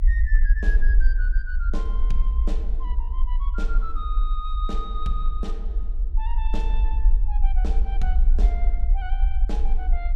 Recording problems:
low-frequency rumble; below 44 Hz, SNR -11 dB

